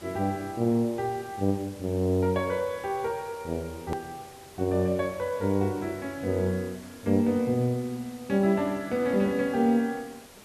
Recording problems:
background hiss; slope -3 dB per octave, SNR 21 dB
hard cut with a click; at 4 s

